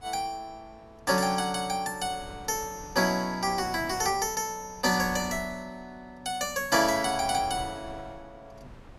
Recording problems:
wind noise; below 710 Hz, SNR 20 dB

